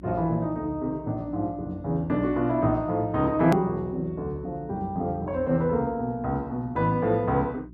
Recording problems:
hum; 60 Hz, harmonics up to 360 Hz, SNR 20 dB
click at an edit; at 3.5 s

